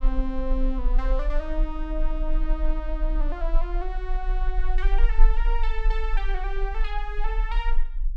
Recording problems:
low-frequency rumble; below 34 Hz, strongest tone 22 Hz, SNR -6 dB

